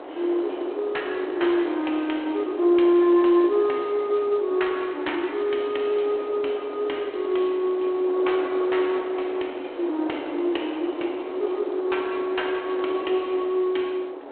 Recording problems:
telephone audio; 260 Hz to 3.4 kHz, G.726
wind on the microphone; below 770 Hz, SNR 12 dB

